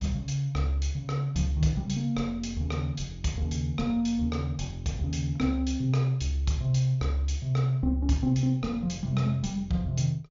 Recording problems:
treble cut off; nothing above 7.1 kHz

